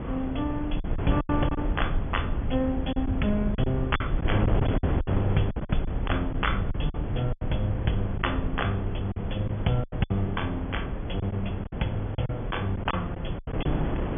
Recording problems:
treble missing; nothing above 3.5 kHz
rumble; below 94 Hz, SNR 5 dB
wind noise; below 400 Hz, SNR 3 dB
lost packets; 9% of the sound replaced, filled with silence

